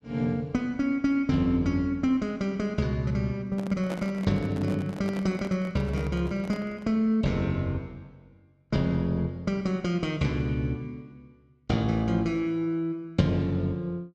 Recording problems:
handling noise; from 3.5 to 7 s; peak -5 dB vs average level

